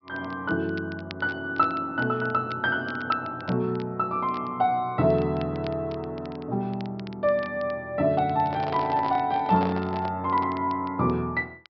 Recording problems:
treble missing; nothing above 5.5 kHz
crackling; vinyl, SNR 23 dB
microphone handling noise; from 8.5 to 10 s; peak -3 dB vs average level

